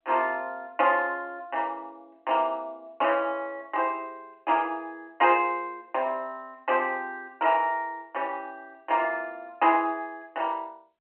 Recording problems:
phone line; 240 Hz to 3.1 kHz, G.711

